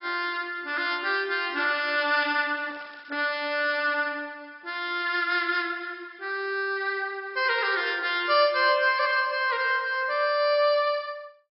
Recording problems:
low-pass filter; nothing above 5.2 kHz
lossy compression; AAC, log-spectral distance 3 dB
crackle; from 1.5 to 4 s; loose cable, SNR 27 dB

